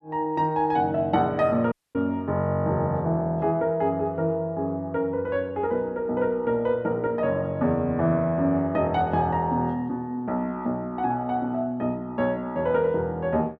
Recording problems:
dropout; at 1.5 s

